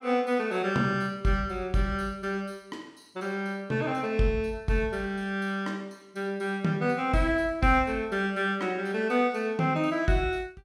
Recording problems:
none

